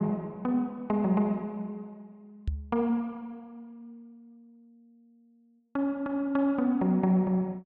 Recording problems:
microphone bump; at 2.5 s; peak +1 dB vs average level

